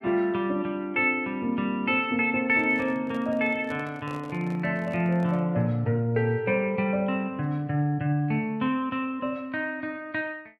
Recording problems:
microphone handling noise; from 2.5 to 5.5 s; peak -11 dB vs average level

